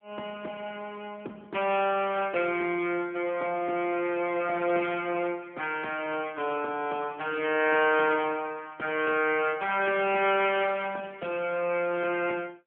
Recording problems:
phone line; 260 Hz to 3.3 kHz, AMR-NB

